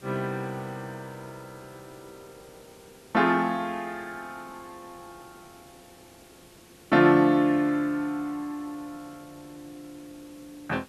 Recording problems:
background hiss; SNR 27 dB

